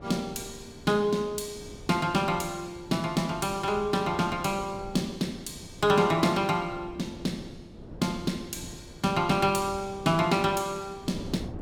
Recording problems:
wind on the microphone; below 330 Hz, SNR 17 dB

